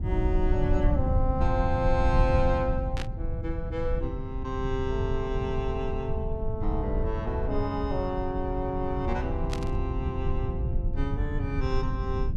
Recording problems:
low-frequency rumble; below 94 Hz, SNR 0 dB
static burst; at 3 s and at 9.5 s; peak -1 dB vs average level

